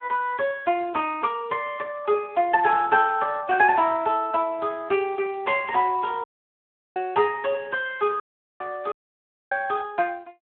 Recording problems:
phone line; 260 Hz to 3.3 kHz, Speex
dropout; at 6 s for 0.5 s, at 8 s and at 9 s for 0.5 s

